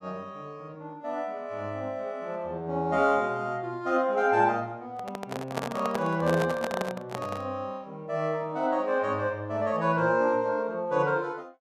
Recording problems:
handling noise; from 5 to 7.5 s; peak +1 dB vs average level

